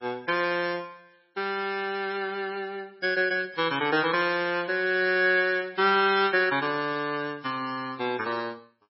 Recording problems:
lossy compression; MP3, log-spectral distance 4 dB, nothing above 5.5 kHz

